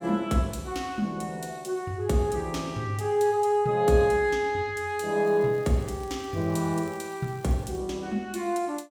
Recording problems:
crackling; from 5.5 to 8 s; loose cable, SNR 27 dB

